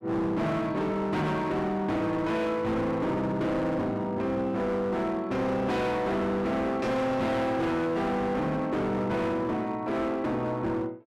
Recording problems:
distorted audio; hard clipping, signal-to-distortion ratio 8 dB

